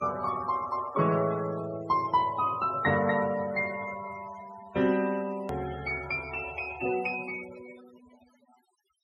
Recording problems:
denoising artefacts; signal-to-artefact ratio 17 dB
hard cut with a click; at 5.5 s

